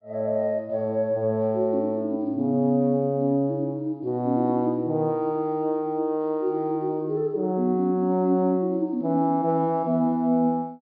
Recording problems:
low-pass filter; nothing above 5 kHz

